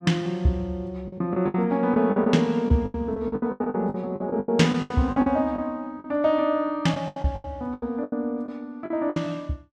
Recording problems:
packet loss; 15% of the sound replaced, filled with the last packet

